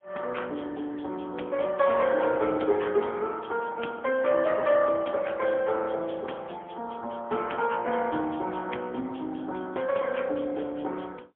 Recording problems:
telephone audio; 220 Hz to 3.3 kHz, AMR-NB, then MP3

